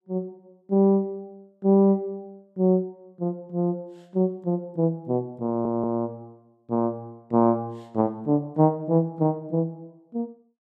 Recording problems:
stutter; at 5.5 s

